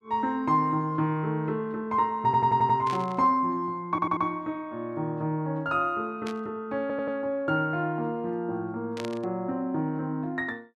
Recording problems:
audio stuttering; at 2.5 s, at 4 s and at 7 s
burst of static; at 3 s, at 6.5 s and at 9 s; peak -7 dB vs average level

